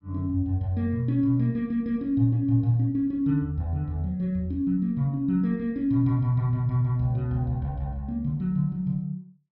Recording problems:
treble cut off; nothing above 5.5 kHz

